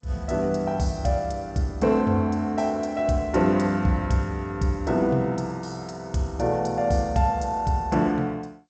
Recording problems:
lossy codec; G.722, log-spectral distance 2 dB, nothing above 7.8 kHz

